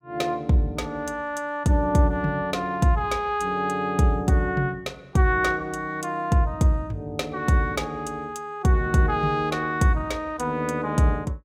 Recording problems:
none

